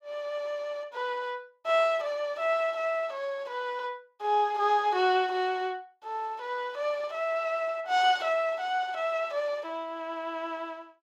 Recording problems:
none

